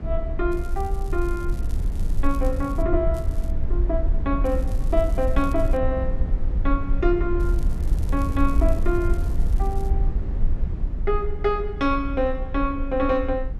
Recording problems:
low-frequency rumble; below 62 Hz, SNR 0 dB
crackling; 4 times, first at 0.5 s; loose cable, SNR 24 dB

